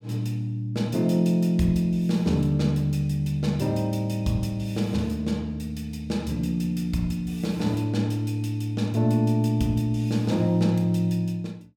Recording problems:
none

